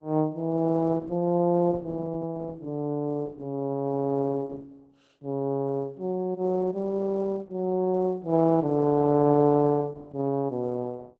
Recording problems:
lossy codec; Opus, log-spectral distance 2 dB

